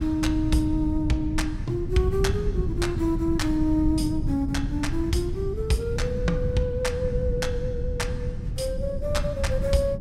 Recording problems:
rumble; below 130 Hz, SNR 3 dB

